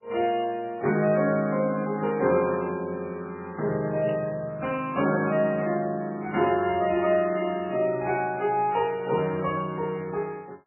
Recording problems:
lossy codec; AAC, then MP3, log-spectral distance 3 dB, nothing above 2.4 kHz
burst of static; 4 times, first at 2 s; peak -14 dB vs average level

